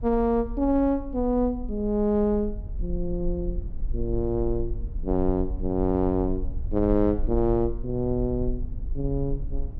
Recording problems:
rumble; below 48 Hz, strongest tone 22 Hz, SNR 9 dB

